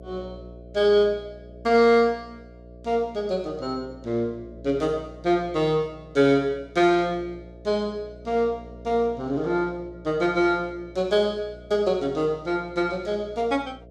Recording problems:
hum; 60 Hz, harmonics up to 660 Hz, SNR 21 dB

